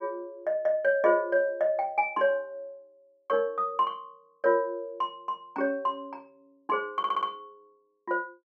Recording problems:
audio stuttering; at 7 s

